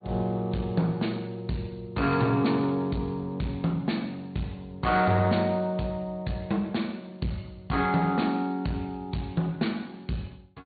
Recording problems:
low-pass filter; nothing above 4.5 kHz
lossy compression; Speex, log-spectral distance 3 dB
distortion; soft clipping, signal-to-distortion ratio 10 dB

